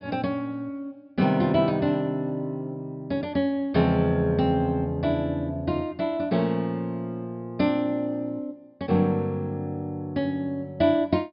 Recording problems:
low-pass filter; nothing above 5.5 kHz

